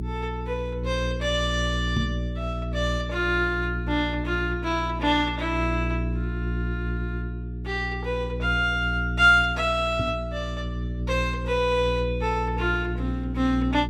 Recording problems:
mains hum; 60 Hz, harmonics up to 420 Hz, SNR 5 dB
microphone thump; at 2 s and at 10 s; peak +3 dB vs average level

